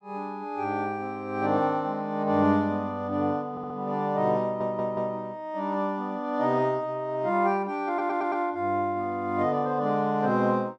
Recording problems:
stutter; at 3.5 s, at 4.5 s and at 8 s

